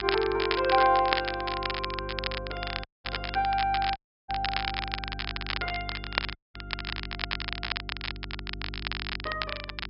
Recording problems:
treble missing; nothing above 5.5 kHz
hum; 50 Hz, harmonics up to 400 Hz, SNR 12 dB
crackle; vinyl, SNR 4 dB
dropout; at 3 s, at 4 s and at 6.5 s

